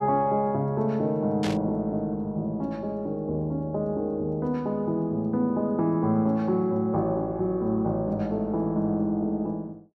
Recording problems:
burst of static; at 1.5 s; peak -4 dB vs average level

